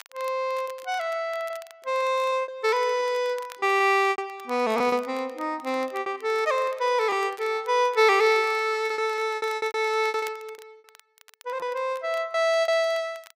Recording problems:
crackling; vinyl, SNR 26 dB
packet loss; 10% of the sound replaced, filled with repeated pitch periods

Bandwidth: 15.5 kHz